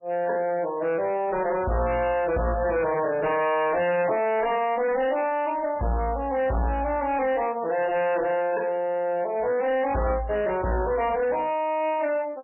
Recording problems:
lossy codec; MP3, log-spectral distance 3 dB, nothing above 2.7 kHz
distorted audio; hard clipping, signal-to-distortion ratio 8 dB

